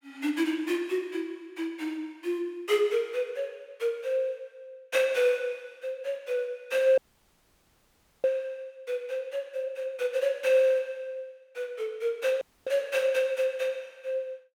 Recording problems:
audio cutting out; at 7 s for 1.5 s and at 12 s

